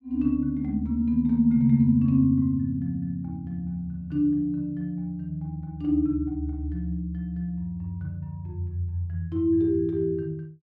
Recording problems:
none

